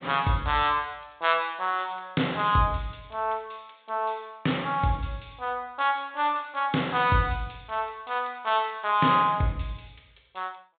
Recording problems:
treble missing; nothing above 4 kHz

